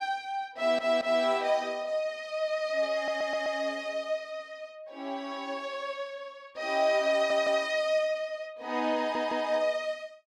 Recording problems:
stutter; 4 times, first at 0.5 s

